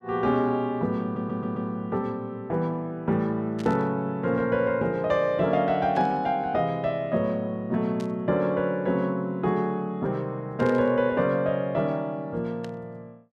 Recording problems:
stutter; at 1 s
static burst; 5 times, first at 3.5 s; peak -13 dB vs average level

